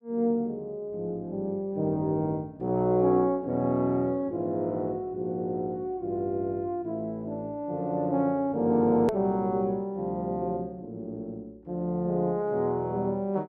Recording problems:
click at an edit; at 9 s

